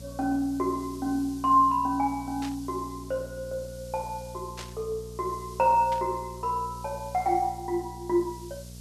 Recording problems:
electrical hum; 60 Hz, harmonics up to 660 Hz, SNR 16 dB
hiss; SNR 21 dB
static burst; at 2.5 s, at 4.5 s and at 6 s; peak -7 dB vs average level

